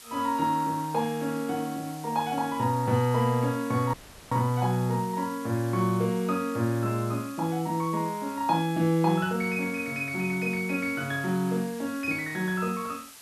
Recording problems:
background hiss; slope +1 dB per octave, SNR 18 dB
dropout; at 4 s

